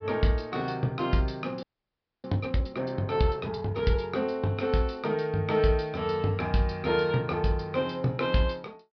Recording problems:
low-pass filter; nothing above 5.5 kHz
frozen audio; at 1.5 s for 0.5 s

